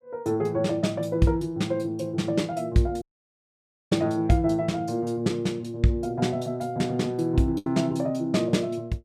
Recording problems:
lost packets; 1.2% of the sound replaced, filled with the last packet
audio cutting out; at 3 s for 1 s

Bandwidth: 15 kHz